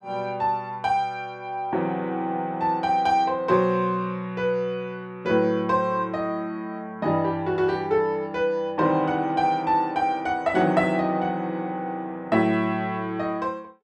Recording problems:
none

